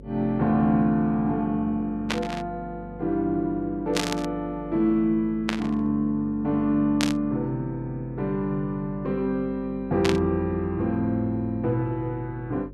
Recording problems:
hum; 50 Hz, harmonics up to 550 Hz, SNR 18 dB
burst of static; 5 times, first at 2 s; peak +3 dB vs average level

